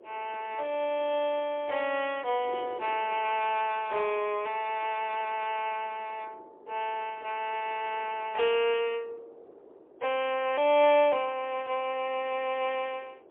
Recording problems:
telephone audio; 320 Hz to 3.4 kHz, AMR-NB, then MP3
wind on the microphone; below 570 Hz, SNR 22 dB

